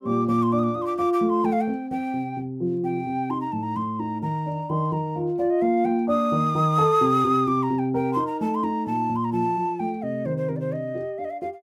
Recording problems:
none

